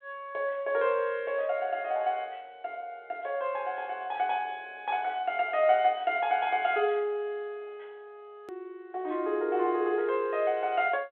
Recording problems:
telephone audio; 280 Hz to 3.6 kHz, G.726
edit click; at 8.5 s

